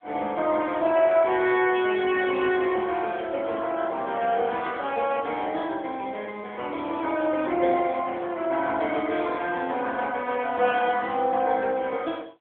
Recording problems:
phone line; 320 Hz to 3.7 kHz, AMR-NB

